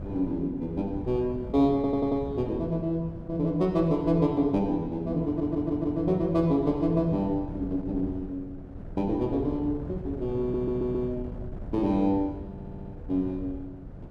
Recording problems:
wind noise; below 210 Hz, SNR 12 dB
stutter; 4 times, first at 2 s

